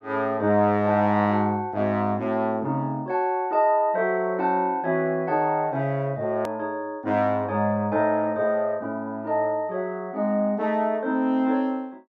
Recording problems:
hard cut with a click; at 6.5 s

